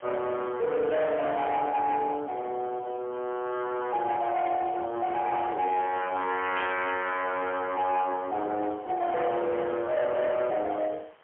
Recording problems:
phone line; 280 Hz to 3.3 kHz, AMR-NB, then MP3
distorted audio; hard clipping, uneven, signal-to-distortion ratio 10 dB
hiss; SNR 27 dB
burst of static; at 6.5 s; peak -3 dB vs average level

